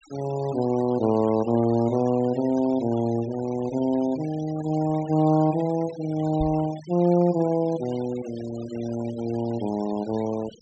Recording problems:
treble missing; nothing above 8 kHz
denoising artefacts; signal-to-artefact ratio 19 dB
microphone thump; at 6.5 s; peak -3 dB vs average level

